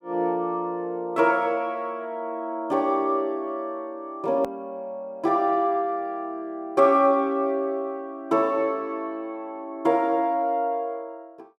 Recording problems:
hard cut with a click; at 4.5 s

